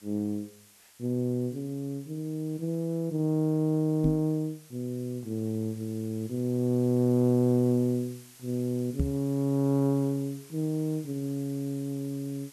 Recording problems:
hiss; slope +1 dB per octave, SNR 23 dB
knock on the microphone; at 4 s and at 9 s; peak +3 dB vs average level

